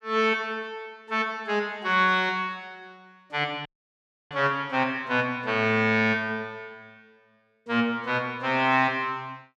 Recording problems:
audio cutting out; at 3.5 s for 0.5 s

